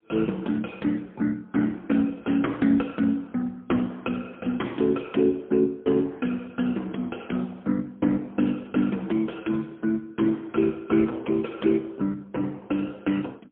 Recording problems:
phone line; 190 Hz to 3.4 kHz, AMR-NB, then MP3

